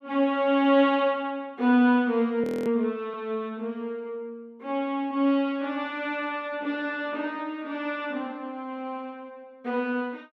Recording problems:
audio freezing; at 2.5 s

